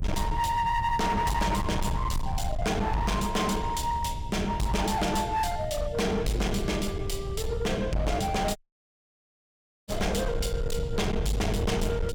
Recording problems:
distorted audio; hard clipping, uneven, signal-to-distortion ratio 8 dB
hum; 60 Hz, harmonics up to 540 Hz, SNR 18 dB
rumble; below 120 Hz, SNR 6 dB
dropout; at 8.5 s for 1.5 s

